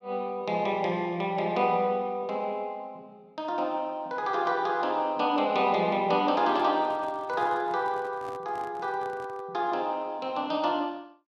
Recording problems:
microphone handling noise; from 6.5 to 9.5 s; peak -13 dB vs average level

